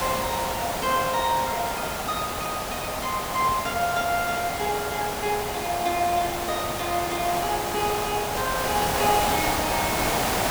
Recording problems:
hiss; SNR 0 dB

